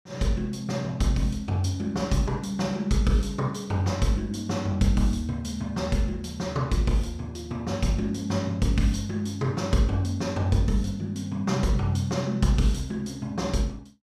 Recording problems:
none

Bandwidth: 14.5 kHz